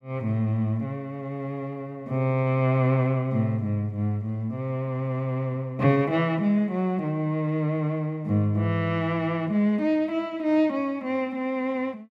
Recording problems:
none

